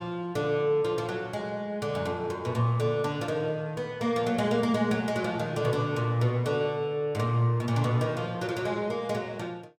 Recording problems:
none

